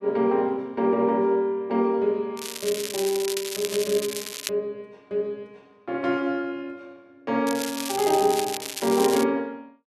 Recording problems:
crackling; from 2.5 to 4.5 s and from 7.5 to 9 s; loose cable, SNR 7 dB

